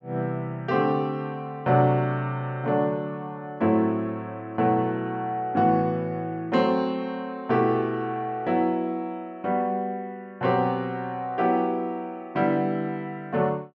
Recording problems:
none

